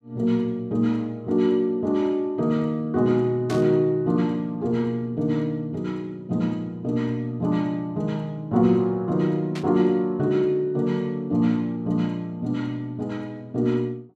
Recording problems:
static burst; at 3.5 s and at 9.5 s; peak -8 dB vs average level

